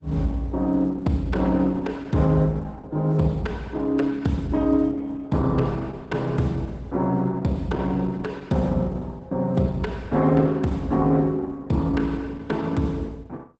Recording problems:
codec artefacts; Opus, log-spectral distance 2 dB, nothing above 8 kHz

